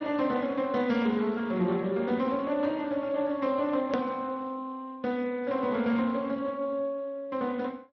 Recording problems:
low-pass filter; nothing above 6 kHz
codec artefacts; Speex, log-spectral distance 2 dB
edit click; at 4 s

